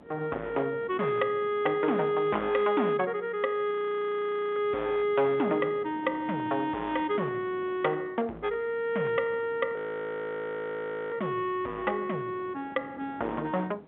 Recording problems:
phone line; 260 Hz to 3.7 kHz, G.711
distorted audio; hard clipping, uneven, signal-to-distortion ratio 11 dB
wind on the microphone; below 670 Hz, SNR 21 dB
frozen audio; at 3.5 s for 1 s and at 10 s for 1.5 s

